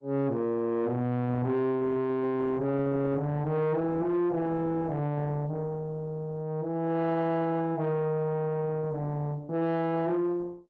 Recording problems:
lossy codec; Opus, log-spectral distance 2 dB
distorted audio; soft clipping, signal-to-distortion ratio 10 dB

